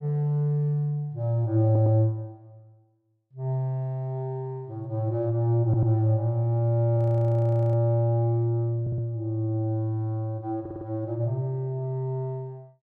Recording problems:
stutter; 4 times, first at 1.5 s
frozen audio; at 7 s for 1 s

